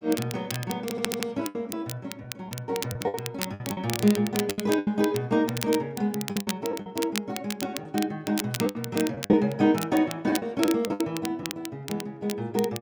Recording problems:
crackling; vinyl, SNR 9 dB
lost packets; 8% of the sound replaced, filled with the last packet
audio stuttering; at 1 s

